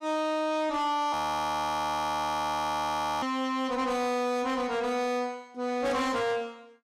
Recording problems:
distorted audio; soft clipping, signal-to-distortion ratio 10 dB
frozen audio; at 1 s for 2 s

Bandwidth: 15.5 kHz